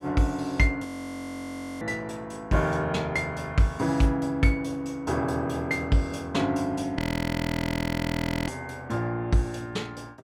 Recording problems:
frozen audio; at 1 s for 1 s and at 7 s for 1.5 s

